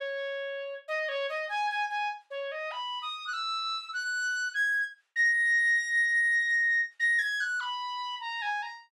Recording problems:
none

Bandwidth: 12.5 kHz